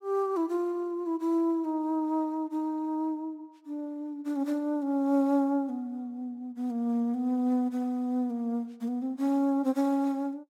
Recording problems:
none

